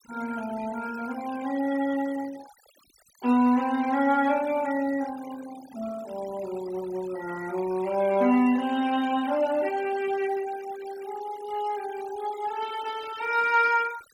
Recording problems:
noise reduction artefacts; signal-to-artefact ratio 18 dB

